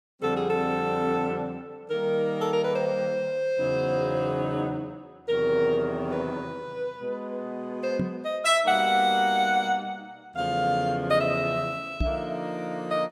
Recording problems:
microphone bump; at 8 s and at 12 s; peak +3 dB vs average level

